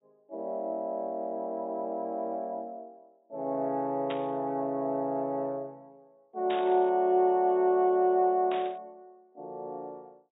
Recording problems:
treble missing; nothing above 4 kHz
burst of static; at 4 s, at 6.5 s and at 8.5 s; peak -7 dB vs average level

